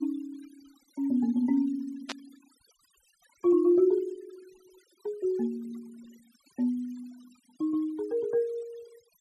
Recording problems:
noise reduction artefacts; signal-to-artefact ratio 26 dB
burst of static; at 2 s; peak -3 dB vs average level

